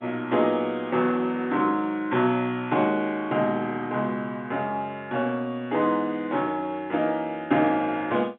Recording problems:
telephone audio; 170 Hz to 3.7 kHz, G.711

